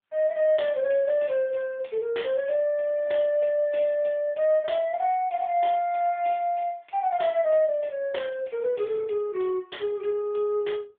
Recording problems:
telephone audio; 300 Hz to 3.5 kHz, AMR-NB

